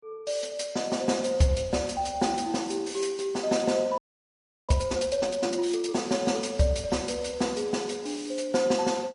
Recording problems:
lossy codec; MP3, log-spectral distance 3 dB, nothing above 10.4 kHz
frozen audio; at 4 s for 0.5 s

